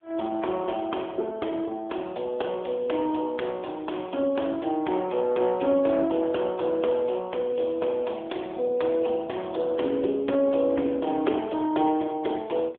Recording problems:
telephone audio; 220 Hz to 3.4 kHz, AMR-NB

